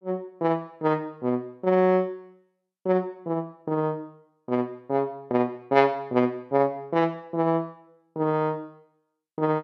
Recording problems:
none

